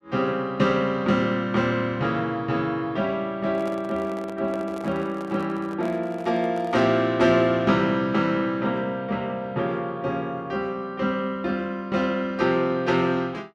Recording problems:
microphone handling noise; from 3.5 to 7 s; peak -9 dB vs average level

